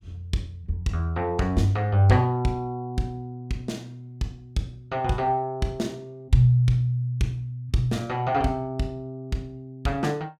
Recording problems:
none

